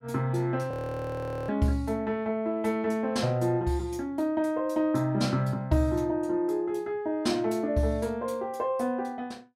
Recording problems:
frozen audio; at 0.5 s for 1 s

